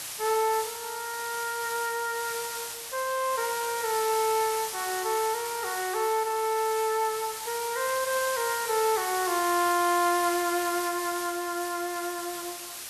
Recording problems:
background hiss; slope +1 dB per octave, SNR 6 dB

